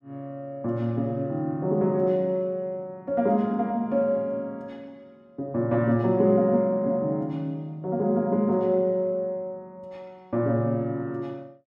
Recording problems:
none

